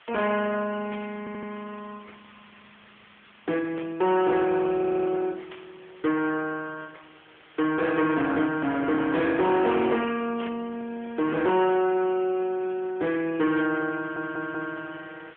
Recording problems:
phone line; 280 Hz to 2.8 kHz, AMR-NB
distortion; soft clipping, signal-to-distortion ratio 13 dB
background hiss; SNR 26 dB
static burst; 5 times, first at 1 s; peak -10 dB vs average level
stutter; at 1 s, at 5 s and at 14 s

